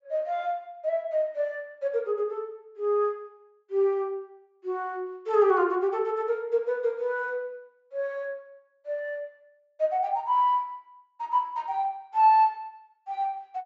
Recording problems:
low-pass filter; nothing above 8 kHz

